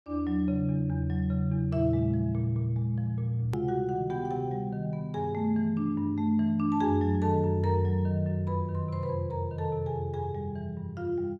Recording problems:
edit click; at 3.5 s

